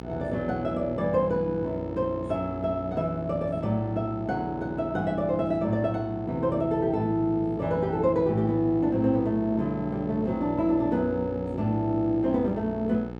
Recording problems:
hum; 60 Hz, harmonics up to 1.7 kHz, SNR 12 dB

